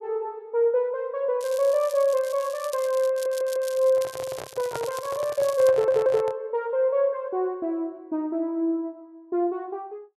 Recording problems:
crackling; from 1.5 to 5.5 s; loose cable, SNR 17 dB
stutter; at 3 s and at 5.5 s
microphone handling noise; from 4 to 6.5 s; peak -3 dB vs average level

